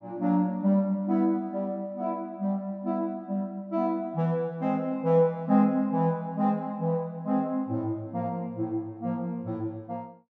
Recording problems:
none

